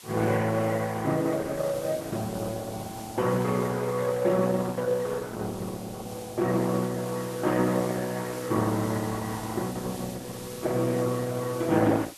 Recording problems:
codec artefacts; Opus, log-spectral distance 3 dB
hiss; slope +1 dB per octave, SNR 16 dB
crackle; from 3.5 to 5 s; loose cable, SNR 29 dB

